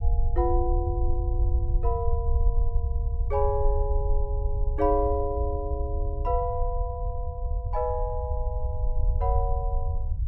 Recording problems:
rumble; below 70 Hz, SNR -2 dB

